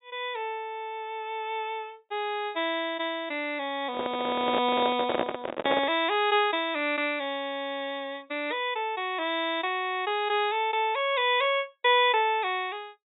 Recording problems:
treble missing; nothing above 4 kHz
microphone handling noise; from 4 to 6 s; peak +5 dB vs average level

